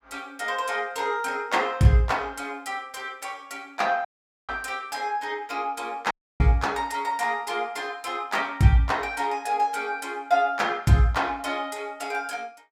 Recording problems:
dropout; at 4 s and at 6 s

